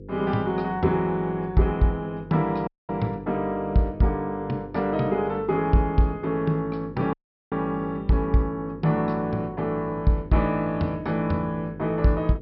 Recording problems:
treble cut off; nothing above 5.5 kHz
hum; 50 Hz, harmonics up to 500 Hz, SNR 17 dB
dropout; at 2.5 s and at 7 s

